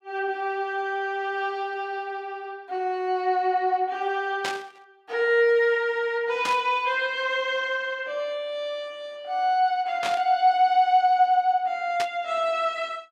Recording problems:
burst of static; 4 times, first at 4.5 s; peak -1 dB vs average level

